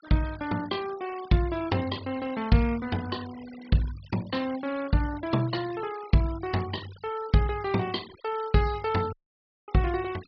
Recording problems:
treble cut off; nothing above 5.5 kHz
denoising artefacts; signal-to-artefact ratio 18 dB
dropout; at 9 s for 0.5 s

